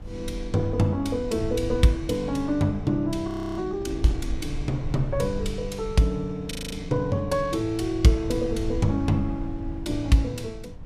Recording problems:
low-frequency rumble; below 82 Hz, SNR 11 dB
audio freezing; at 3.5 s and at 6.5 s

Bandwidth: 15 kHz